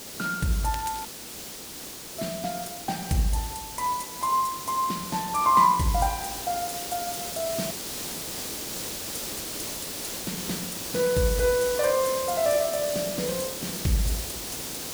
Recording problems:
lossy compression; Opus, log-spectral distance 4 dB
hiss; SNR 6 dB
crackle; at 0.5 s; loose cable, SNR 18 dB
dropout; at 1 s for 1 s and at 7.5 s for 1.5 s

